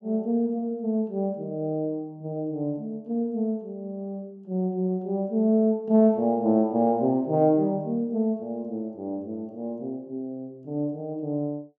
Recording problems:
none

